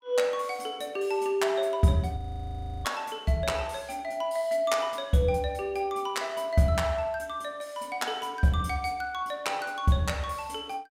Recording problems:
audio freezing; at 2 s for 0.5 s

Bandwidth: 16 kHz